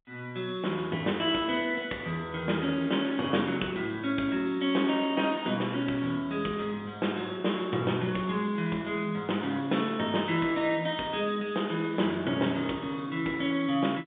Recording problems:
telephone audio; 170 Hz to 3.6 kHz, G.711

